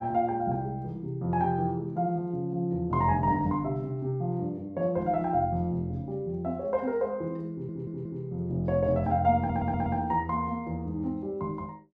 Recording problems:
stutter; at 7.5 s and at 9.5 s

